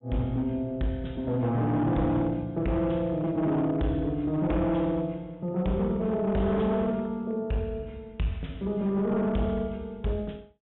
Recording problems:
treble missing; nothing above 3.7 kHz
distorted audio; hard clipping, uneven, signal-to-distortion ratio 10 dB

